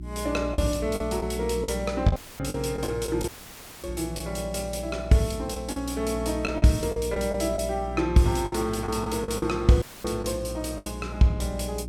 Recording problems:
electrical hum; 60 Hz, harmonics up to 360 Hz, SNR 10 dB
packet loss; 7% of the sound replaced, filled with the last packet
dropout; at 2 s, at 3.5 s for 0.5 s and at 10 s; filled with static

